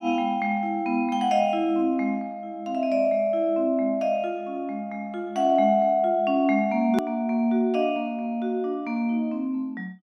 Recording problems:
hard cut with a click; at 7 s

